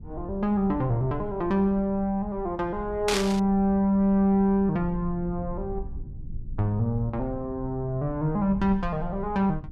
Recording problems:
low-frequency rumble; below 84 Hz, SNR 14 dB
static burst; at 3 s; peak +2 dB vs average level

